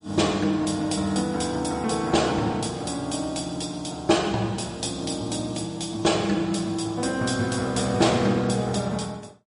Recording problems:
lossy codec; MP3, log-spectral distance 5 dB, nothing above 10.4 kHz

